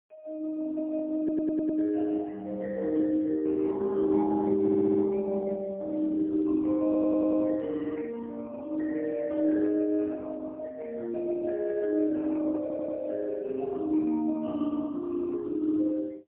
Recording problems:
telephone audio; 240 Hz to 2.4 kHz, AMR-NB, then MP3
stutter; 4 times, first at 1 s

